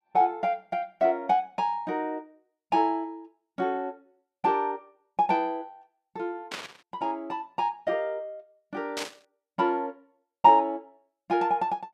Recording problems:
burst of static; at 6.5 s and at 9 s; peak -2 dB vs average level

